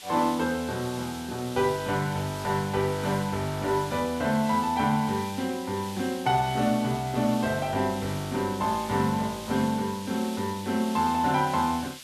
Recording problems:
background hiss; SNR 14 dB

